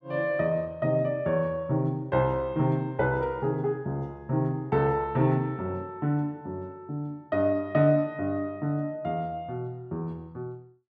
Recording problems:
none

